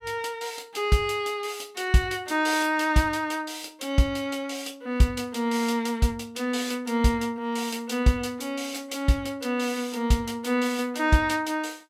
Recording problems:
none

